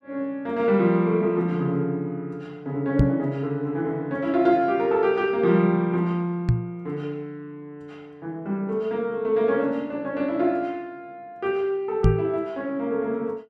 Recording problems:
knock on the microphone; at 3 s, at 6.5 s and at 12 s; peak +9 dB vs average level

